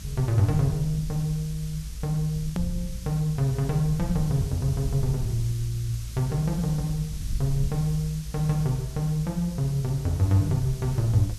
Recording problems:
background hiss; SNR 17 dB
rumble; below 82 Hz, SNR 10 dB
click at an edit; at 2.5 s

